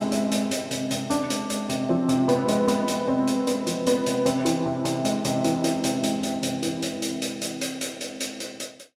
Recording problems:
none

